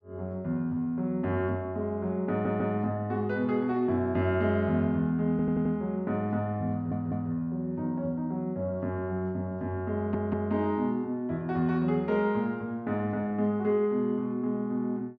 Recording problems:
audio stuttering; 4 times, first at 2.5 s

